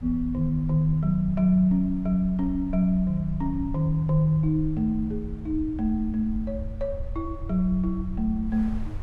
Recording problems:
rumble; below 80 Hz, SNR 12 dB
wind on the microphone; below 1.2 kHz, SNR 29 dB

